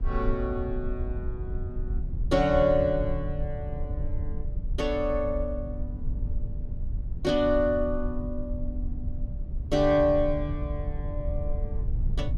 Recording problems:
low-frequency rumble; below 72 Hz, SNR 6 dB

